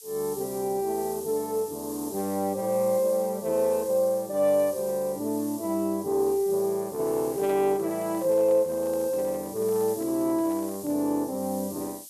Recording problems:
background hiss; SNR 15 dB
microphone handling noise; from 7 to 11 s; peak -12 dB vs average level

